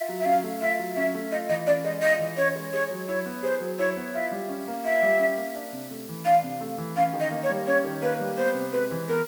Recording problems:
hiss; slope +4 dB per octave, SNR 17 dB

